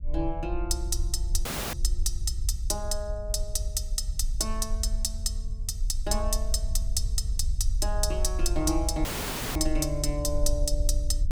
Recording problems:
rumble; below 54 Hz, SNR 1 dB
audio cutting out; at 1.5 s and at 9 s for 0.5 s

